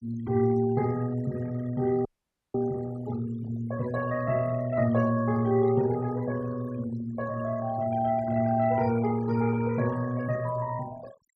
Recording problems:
denoising artefacts; signal-to-artefact ratio 18 dB
frozen audio; at 2 s

